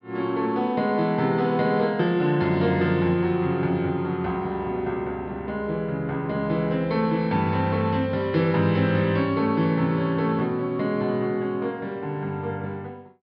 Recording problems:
low-pass filter; nothing above 5.5 kHz

